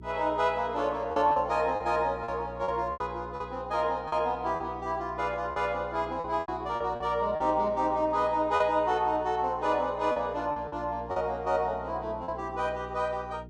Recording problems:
mains hum; 60 Hz, harmonics up to 420 Hz, SNR 18 dB
packet loss; 7% of the sound replaced, filled with repeated pitch periods

